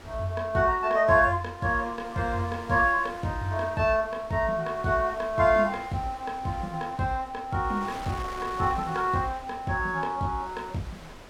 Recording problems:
wind on the microphone; below 2.1 kHz, SNR 18 dB

